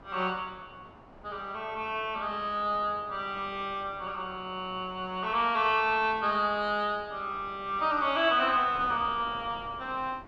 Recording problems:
wind on the microphone; below 990 Hz, SNR 21 dB

